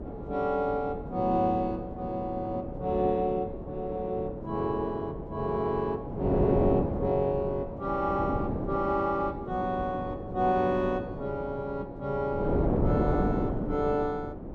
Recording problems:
wind noise; below 460 Hz, SNR 4 dB

